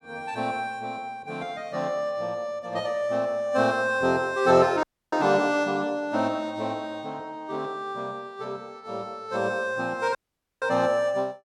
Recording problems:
dropout; at 5 s and at 10 s

